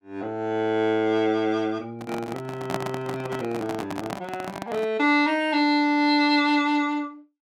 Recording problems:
microphone handling noise; from 2 to 5 s; peak 0 dB vs average level

